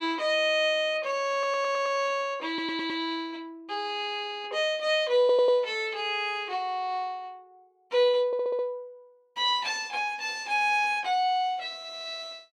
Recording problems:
audio stuttering; 4 times, first at 1.5 s

